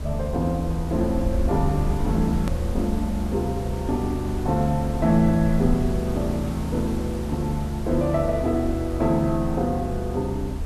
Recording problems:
background hiss; slope -6 dB per octave, SNR 13 dB
low-frequency rumble; below 76 Hz, SNR 6 dB
edit click; at 2.5 s

